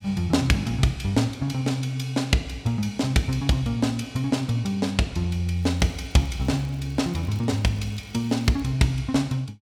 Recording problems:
crackle; from 5.5 to 8.5 s; loose cable, SNR 29 dB

